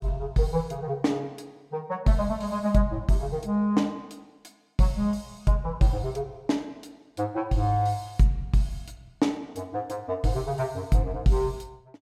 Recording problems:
none

